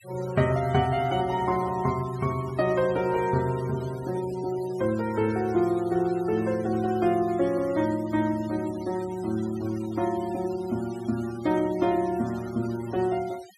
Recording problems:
noise reduction artefacts; signal-to-artefact ratio 19 dB

